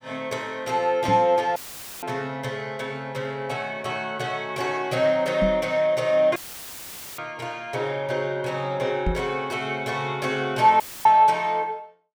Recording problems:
knock on the microphone; at 1 s, at 5.5 s and at 9 s; peak +1 dB vs average level
dropout; at 1.5 s, at 6.5 s for 1 s and at 11 s; filled with static

